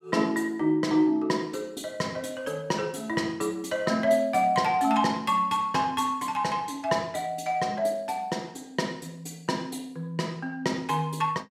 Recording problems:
none

